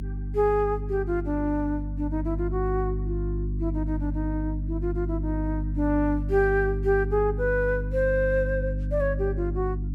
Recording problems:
mains hum; 50 Hz, harmonics up to 300 Hz, SNR 3 dB

